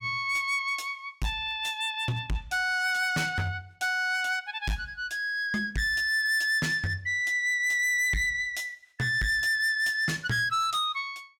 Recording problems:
distortion; hard clipping, signal-to-distortion ratio 11 dB

